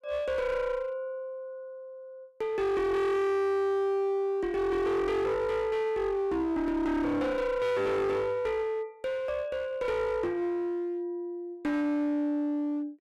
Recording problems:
distorted audio; hard clipping, uneven, signal-to-distortion ratio 7 dB

